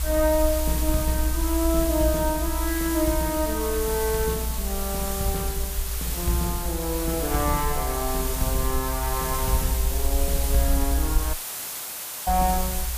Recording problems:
background hiss; slope 0 dB per octave, SNR 3 dB
rumble; below 60 Hz, strongest tone 60 Hz, SNR 3 dB
audio cutting out; at 11 s for 1 s

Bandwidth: 15 kHz